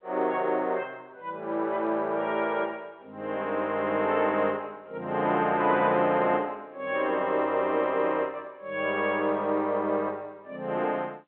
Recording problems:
phone line; 300 Hz to 3.5 kHz, G.711

